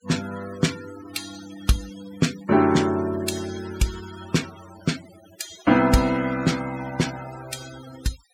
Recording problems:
denoising artefacts; signal-to-artefact ratio 15 dB

